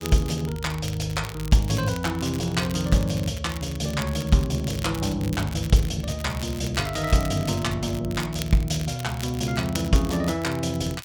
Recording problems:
crackle; vinyl, SNR 15 dB

